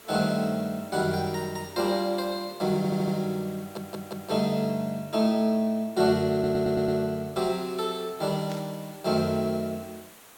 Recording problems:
hiss; slope -3 dB per octave, SNR 21 dB
stutter; at 3 s, at 3.5 s and at 6.5 s
burst of static; at 8.5 s; peak -11 dB vs average level

